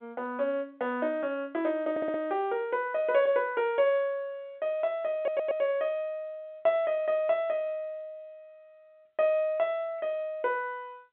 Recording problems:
phone line; 280 Hz to 4 kHz, G.711
stutter; at 2 s and at 5 s

